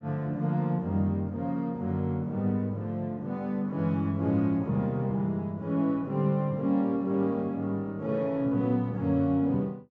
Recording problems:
low-pass filter; nothing above 8 kHz

